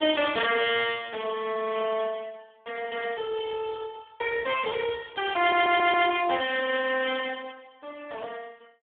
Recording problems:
telephone audio; 280 Hz to 3.3 kHz, Speex
stutter; at 5.5 s

